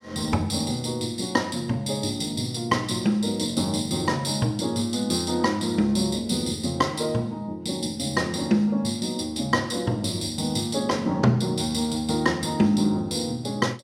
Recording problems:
none

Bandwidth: 16 kHz